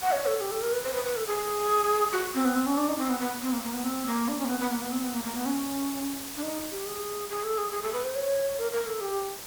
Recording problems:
background hiss; slope -1 dB per octave, SNR 7 dB

